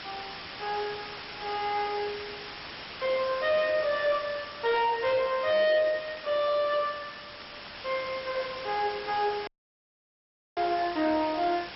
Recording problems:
lossy compression; MP2, log-spectral distance 19 dB, nothing above 5.3 kHz
distorted audio; hard clipping, signal-to-distortion ratio 11 dB
background hiss; slope -1 dB per octave, SNR 12 dB
burst of static; at 6 s and at 7.5 s; peak -15 dB vs average level
dropout; at 9.5 s for 1 s

